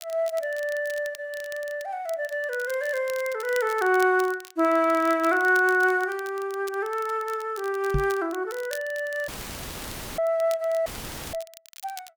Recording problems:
crackling; vinyl, SNR 19 dB
knock on the microphone; at 8 s; peak +2 dB vs average level
audio cutting out; at 9.5 s for 1 s and at 11 s; filled with static

